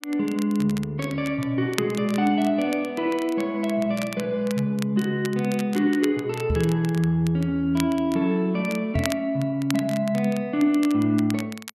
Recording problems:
crackle; vinyl, SNR 16 dB
microphone thump; at 6.5 s and at 9 s; peak +2 dB vs average level

